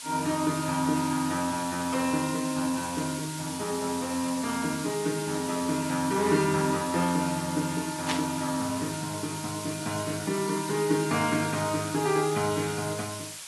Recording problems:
lossy codec; AAC, log-spectral distance 12 dB
background hiss; slope +3 dB per octave, SNR 8 dB
static burst; at 8 s; peak +2 dB vs average level

